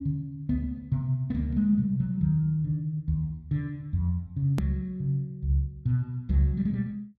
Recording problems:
click at an edit; at 4.5 s

